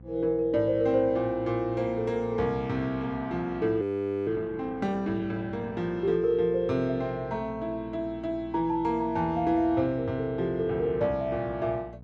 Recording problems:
hum; 60 Hz, harmonics up to 780 Hz, SNR 19 dB
audio freezing; at 4 s

